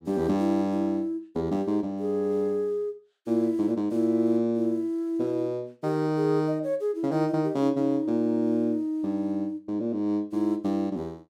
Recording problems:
none

